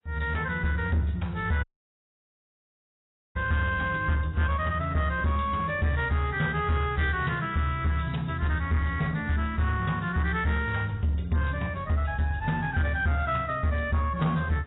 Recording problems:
codec artefacts; AAC, log-spectral distance 3 dB, nothing above 3.8 kHz
distortion; soft clipping, signal-to-distortion ratio 12 dB
dropout; at 1.5 s for 1.5 s

